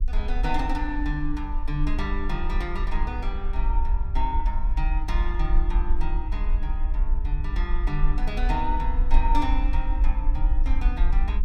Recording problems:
low-frequency rumble; below 46 Hz, strongest tone 22 Hz, SNR -5 dB

